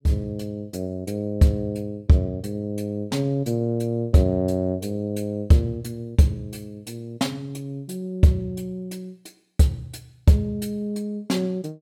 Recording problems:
none

